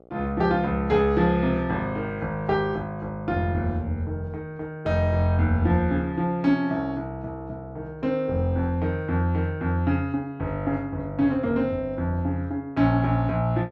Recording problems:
hum; 60 Hz, harmonics up to 1.3 kHz, SNR 29 dB

